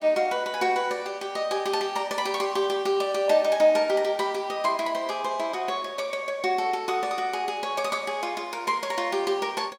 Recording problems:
none

